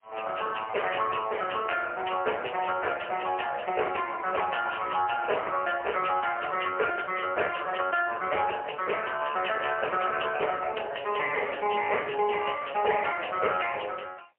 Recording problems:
phone line; 370 Hz to 2.8 kHz, AMR-NB, then MP3

